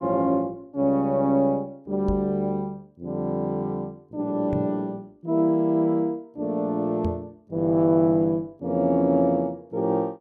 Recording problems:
microphone bump; at 2 s, at 4.5 s and at 7 s; peak 0 dB vs average level

